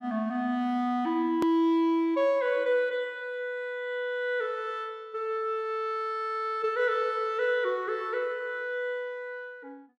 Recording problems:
click at an edit; at 1.5 s

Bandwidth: 14 kHz